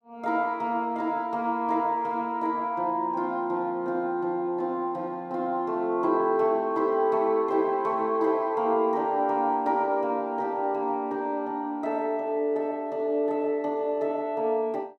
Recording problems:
none

